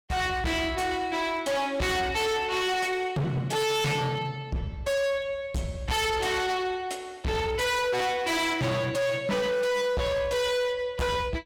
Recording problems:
distorted audio; hard clipping, signal-to-distortion ratio 6 dB

